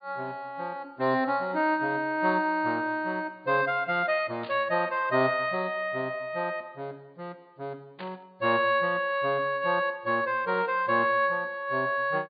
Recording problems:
treble missing; nothing above 4.8 kHz
static burst; at 4.5 s and at 8 s; peak -11 dB vs average level

